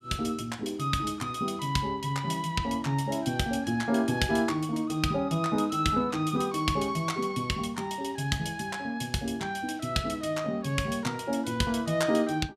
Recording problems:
none

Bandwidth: 15 kHz